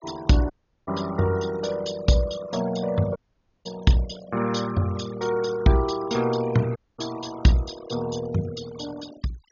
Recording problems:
low-pass filter; nothing above 7 kHz
denoising artefacts; signal-to-artefact ratio 15 dB
dropout; at 0.5 s, at 3 s and at 7 s

